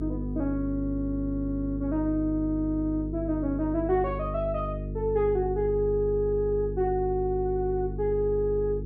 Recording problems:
hum; 50 Hz, harmonics up to 450 Hz, SNR 7 dB

